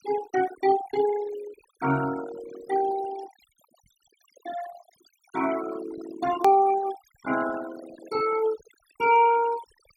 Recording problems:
denoising artefacts; signal-to-artefact ratio 14 dB
hard cut with a click; at 6.5 s

